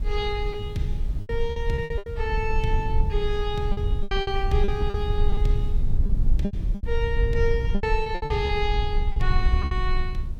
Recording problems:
hiss; slope -4 dB per octave, SNR 28 dB
low-frequency rumble; below 60 Hz, strongest tone 22 Hz, SNR -1 dB
lost packets; 12% of the sound replaced, filled with repeated pitch periods

